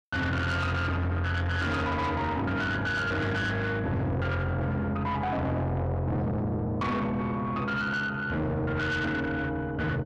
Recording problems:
distorted audio; soft clipping, signal-to-distortion ratio 7 dB

